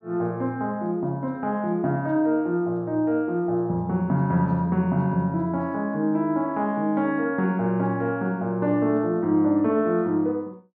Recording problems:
none

